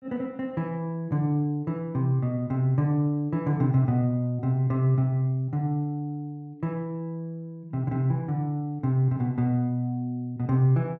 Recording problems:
none

